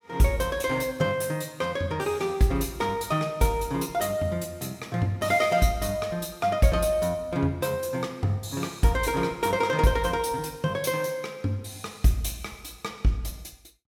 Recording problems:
none

